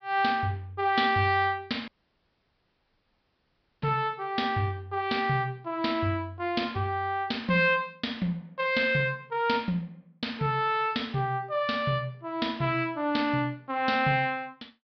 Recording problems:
treble missing; nothing above 5.5 kHz
dropout; at 2 s for 2 s

